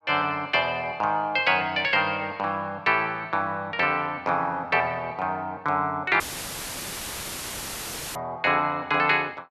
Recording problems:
audio cutting out; at 6 s for 2 s; filled with static

